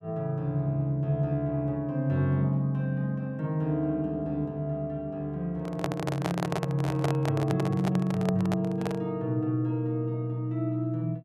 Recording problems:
handling noise; from 5.5 to 9 s; peak +2 dB vs average level

